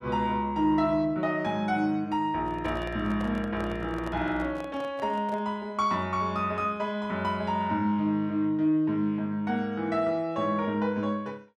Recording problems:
handling noise; from 2.5 to 5.5 s; peak -8 dB vs average level

